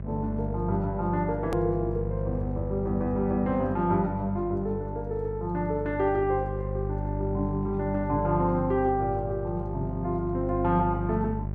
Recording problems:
electrical hum; 50 Hz, harmonics up to 600 Hz, SNR 6 dB
edit click; at 1.5 s

